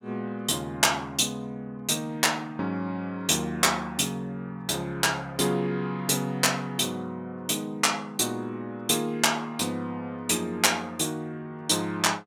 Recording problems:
none

